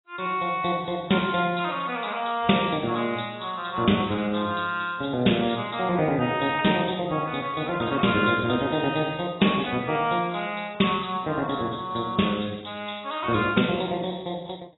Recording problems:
lossy compression; AAC, log-spectral distance 9 dB, nothing above 3.8 kHz

